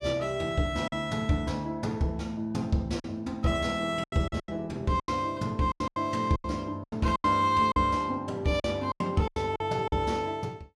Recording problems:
packet loss; 10% of the sound replaced, filled with silence

